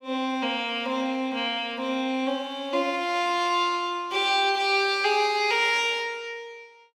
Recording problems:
none

